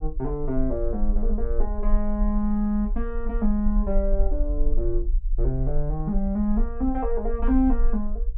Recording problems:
rumble; below 40 Hz, strongest tone 20 Hz, SNR 2 dB

